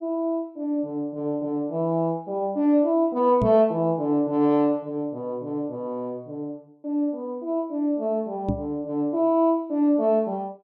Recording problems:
microphone bump; at 3.5 s and at 8.5 s; peak +2 dB vs average level

